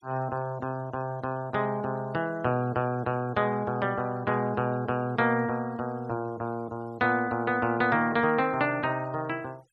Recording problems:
denoising artefacts; signal-to-artefact ratio 27 dB

